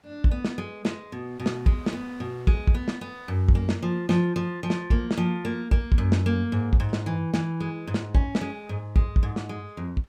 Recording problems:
wind on the microphone; below 2.3 kHz, SNR 31 dB

